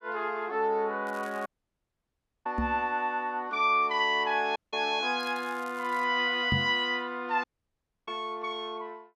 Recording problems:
crackling; at 1 s and at 5 s; loose cable, SNR 25 dB
audio cutting out; at 1.5 s for 1 s, at 4.5 s and at 7.5 s for 0.5 s
knock on the microphone; at 2.5 s and at 6.5 s; peak +3 dB vs average level

